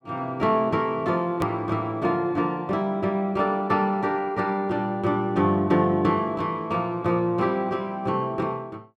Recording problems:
click at an edit; at 1.5 s

